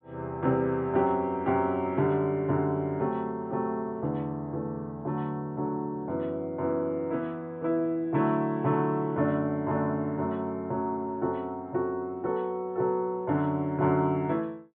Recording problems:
treble cut off; nothing above 4 kHz

